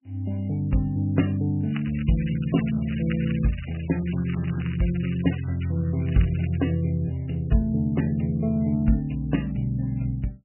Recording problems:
lossy codec; MP3, log-spectral distance 7 dB, nothing above 2.9 kHz
crackle; from 1.5 to 6.5 s; loose cable, SNR 17 dB

